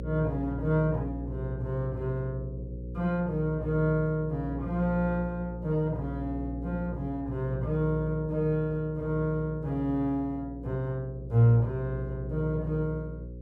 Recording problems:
hum; 60 Hz, harmonics up to 540 Hz, SNR 9 dB

